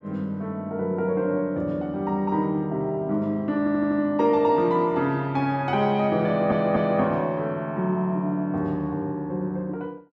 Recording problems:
stutter; at 3.5 s and at 6.5 s

